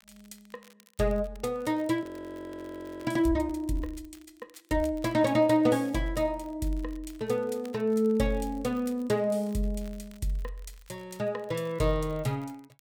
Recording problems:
crackling; vinyl, SNR 29 dB
audio freezing; at 2 s for 1 s

